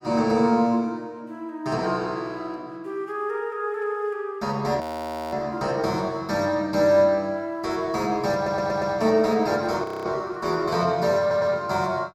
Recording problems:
audio freezing; at 5 s for 0.5 s and at 10 s
stutter; at 8.5 s and at 11 s

